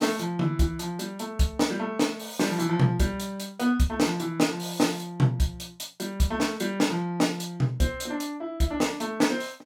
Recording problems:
none

